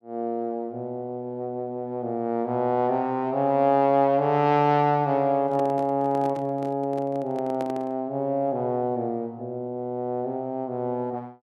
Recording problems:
handling noise; from 5.5 to 8 s; peak -7 dB vs average level

